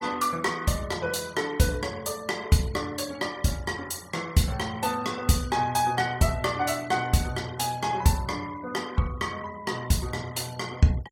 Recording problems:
noise reduction artefacts; signal-to-artefact ratio 21 dB

